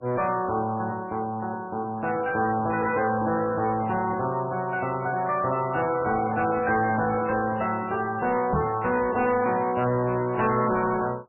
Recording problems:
codec artefacts; MP3, log-spectral distance 4 dB, nothing above 2.7 kHz
distorted audio; soft clipping, signal-to-distortion ratio 11 dB
knock on the microphone; at 8.5 s; peak +3 dB vs average level

